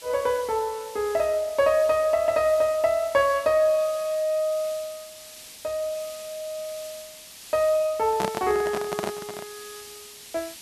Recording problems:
hiss; SNR 17 dB
handling noise; from 8 to 9.5 s; peak 0 dB vs average level

